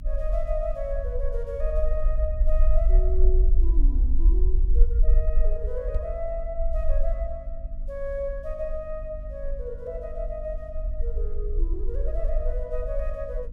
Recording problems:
hum; 50 Hz, harmonics up to 300 Hz, SNR 12 dB
low-frequency rumble; below 44 Hz, strongest tone 18 Hz, SNR -6 dB
microphone thump; at 6 s; peak +7 dB vs average level

